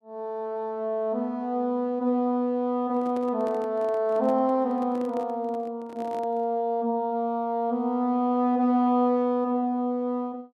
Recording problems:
handling noise; from 3 to 6.5 s; peak -11 dB vs average level

